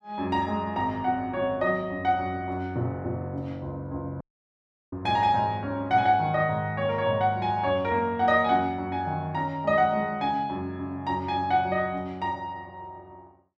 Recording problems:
dropout; at 4 s for 0.5 s

